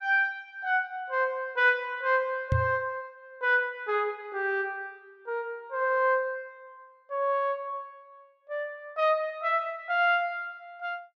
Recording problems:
microphone bump; at 2.5 s; peak +5 dB vs average level

